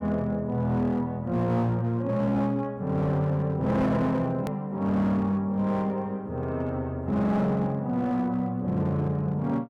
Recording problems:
distorted audio; hard clipping, signal-to-distortion ratio 12 dB
edit click; at 4.5 s

